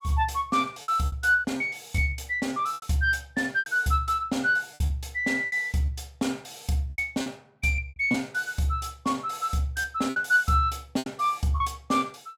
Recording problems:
packet loss; 9% of the sound replaced, filled with repeated pitch periods

